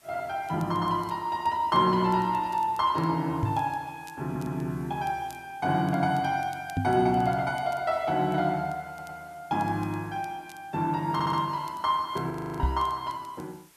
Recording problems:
background hiss; slope -1 dB per octave, SNR 29 dB
crackle; vinyl, SNR 29 dB
microphone bump; at 3.5 s, at 7 s and at 13 s; peak +4 dB vs average level
stutter; at 4.5 s, at 9 s and at 11 s
frozen audio; at 12 s

